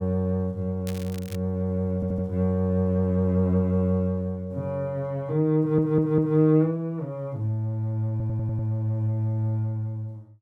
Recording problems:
crackle; at 1 s; loose cable, SNR 20 dB
audio stuttering; at 2 s, at 5.5 s and at 8 s

